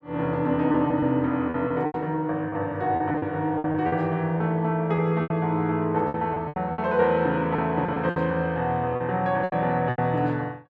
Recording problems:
lost packets; 10% of the sound replaced, filled with repeated pitch periods

